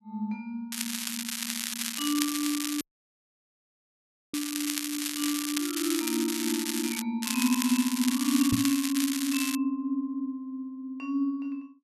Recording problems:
crackling; from 0.5 to 7 s and from 7 to 9.5 s; loose cable, SNR 2 dB
dropout; at 3 s for 1.5 s
knock on the microphone; at 8.5 s; peak +4 dB vs average level

